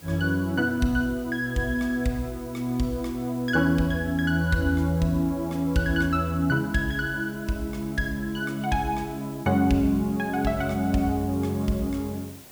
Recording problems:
hiss; SNR 21 dB

